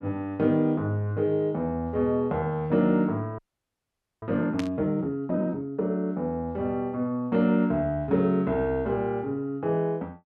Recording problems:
audio freezing; at 3.5 s for 1 s
static burst; at 4.5 s; peak -6 dB vs average level

